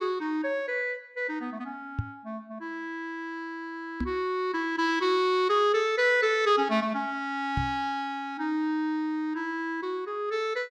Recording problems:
microphone bump; at 2 s, at 4 s and at 7.5 s; peak +2 dB vs average level

